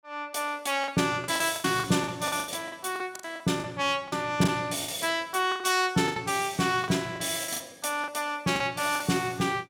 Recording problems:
packet loss; 13% of the sound replaced, filled with the last packet

